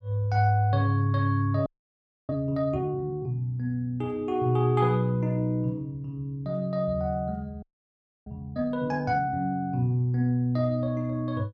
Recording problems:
audio freezing; at 1.5 s for 0.5 s and at 7.5 s for 0.5 s

